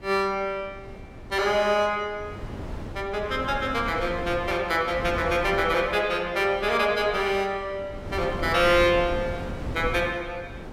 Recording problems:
wind on the microphone; below 400 Hz, SNR 12 dB

